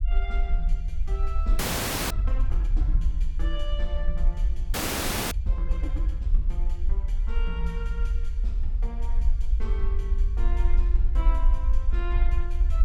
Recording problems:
rumble; below 50 Hz, SNR -12 dB
frozen audio; at 1.5 s for 0.5 s and at 4.5 s for 0.5 s

